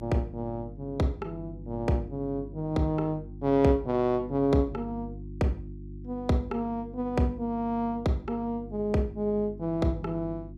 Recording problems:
hum; 50 Hz, harmonics up to 350 Hz, SNR 14 dB

